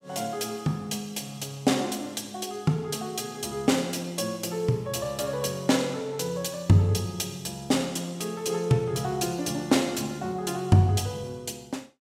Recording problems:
none

